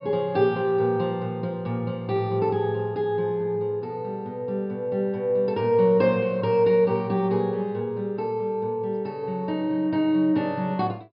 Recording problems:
treble cut off; nothing above 5.5 kHz

